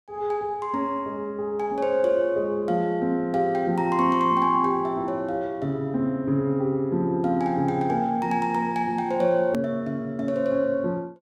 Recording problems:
edit click; at 9.5 s

